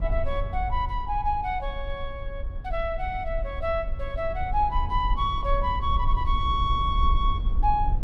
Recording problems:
low-frequency rumble; below 60 Hz, SNR 3 dB

